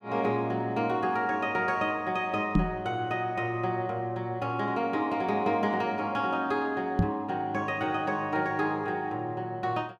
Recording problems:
microphone thump; at 2.5 s and at 7 s; peak +8 dB vs average level

